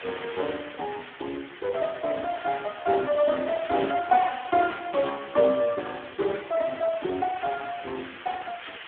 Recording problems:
phone line; 280 Hz to 2 kHz, Speex
hiss; SNR 14 dB

